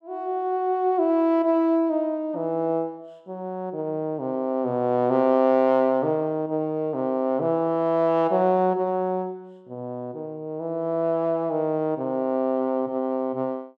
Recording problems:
none

